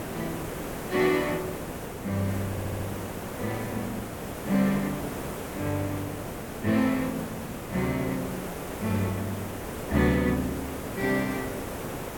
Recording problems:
background hiss; slope -7 dB per octave, SNR 6 dB
stutter; at 2.5 s

